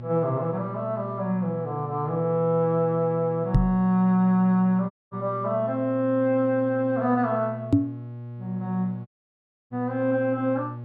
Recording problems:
electrical hum; 60 Hz, harmonics up to 840 Hz, SNR 13 dB
microphone thump; at 3.5 s and at 7.5 s; peak +9 dB vs average level
dropout; at 5 s and at 9 s for 0.5 s

